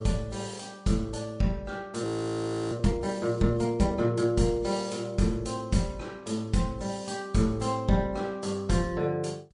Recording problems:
lossy codec; MP3, log-spectral distance 3 dB, nothing above 10.4 kHz
audio freezing; at 2 s for 0.5 s

